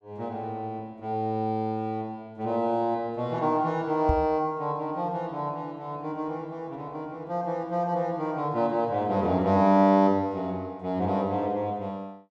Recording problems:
microphone bump; at 4 s; peak +4 dB vs average level

